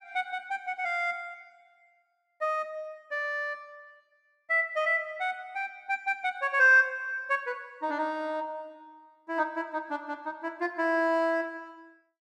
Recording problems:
none

